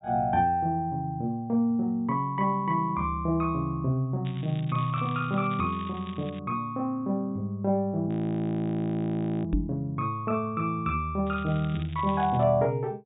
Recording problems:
treble missing; nothing above 4 kHz
crackling; from 4.5 to 6.5 s and from 11 to 12 s; loose cable, SNR 20 dB
audio freezing; at 8 s for 1.5 s
knock on the microphone; at 9.5 s; peak +4 dB vs average level

